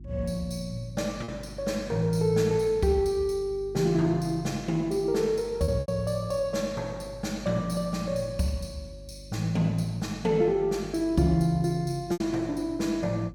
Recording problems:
hum; 50 Hz, harmonics up to 350 Hz, SNR 19 dB
packet loss; 1.8% of the sound replaced, filled with repeated pitch periods

